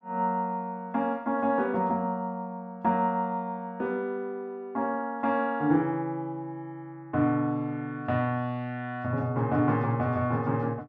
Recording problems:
none

